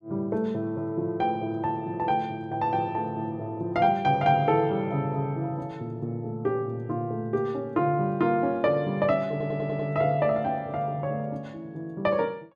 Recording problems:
stutter; at 9.5 s

